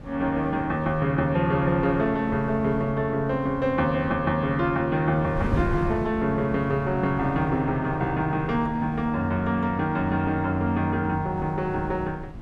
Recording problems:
wind on the microphone; below 240 Hz, SNR 13 dB

